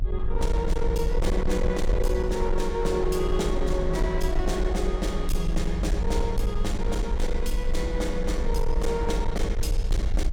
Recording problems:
distorted audio; hard clipping, uneven, signal-to-distortion ratio 11 dB
rumble; below 52 Hz, strongest tone 22 Hz, SNR 1 dB

